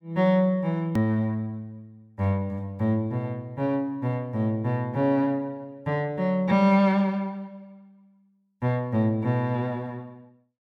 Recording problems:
edit click; at 1 s

